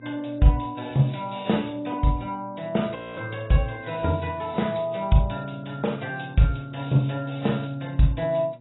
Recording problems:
codec artefacts; AAC, log-spectral distance 5 dB, nothing above 3.8 kHz
hum; 60 Hz, harmonics up to 840 Hz, SNR 24 dB
frozen audio; at 3 s

